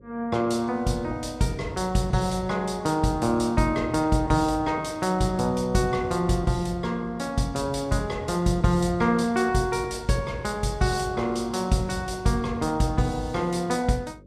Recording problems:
electrical hum; 50 Hz, harmonics up to 550 Hz, SNR 24 dB

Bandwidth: 15 kHz